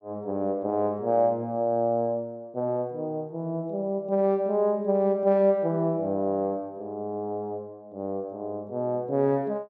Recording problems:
none

